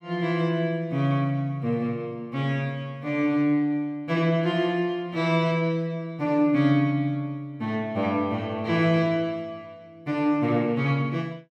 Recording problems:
none

